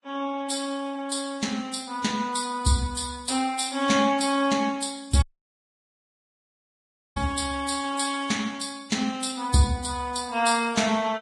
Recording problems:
lossy codec; Vorbis, log-spectral distance 6 dB, nothing above 10.1 kHz
audio cutting out; at 5 s for 2 s

